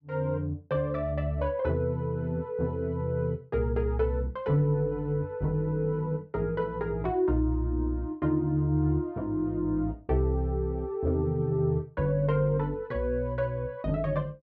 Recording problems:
none

